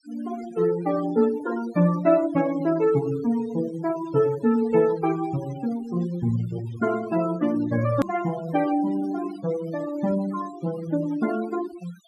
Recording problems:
noise reduction artefacts; signal-to-artefact ratio 16 dB
edit click; at 8 s

